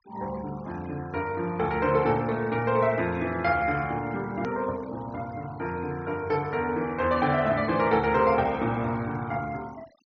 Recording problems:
treble cut off; nothing above 6.3 kHz
noise reduction artefacts; signal-to-artefact ratio 22 dB
hard cut with a click; at 4.5 s

